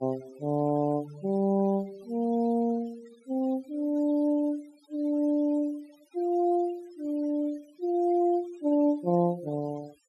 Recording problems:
noise reduction artefacts; signal-to-artefact ratio 26 dB

